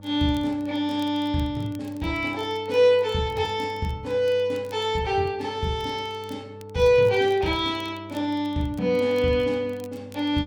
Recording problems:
electrical hum; 50 Hz, harmonics up to 900 Hz, SNR 20 dB
crackling; vinyl, SNR 29 dB

